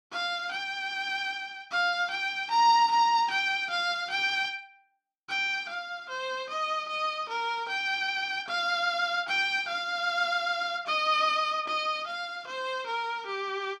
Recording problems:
none

